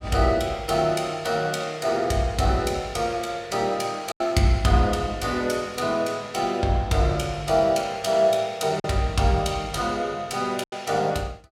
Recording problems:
packet loss; 1.8% of the sound replaced, filled with silence

